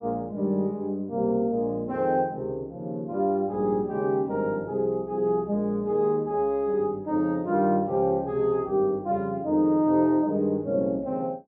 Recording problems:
none

